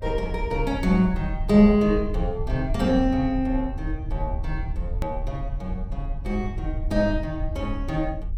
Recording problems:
rumble; below 70 Hz, strongest tone 34 Hz, SNR 7 dB
hard cut with a click; at 5 s

